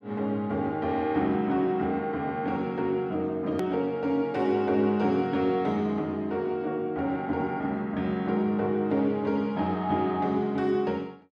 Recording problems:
click at an edit; at 3.5 s

